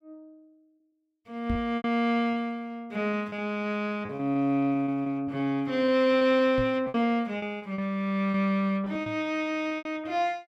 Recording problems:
lost packets; 9% of the sound replaced, filled with repeated pitch periods
microphone thump; at 1.5 s, at 6.5 s and at 9 s; peak -2 dB vs average level

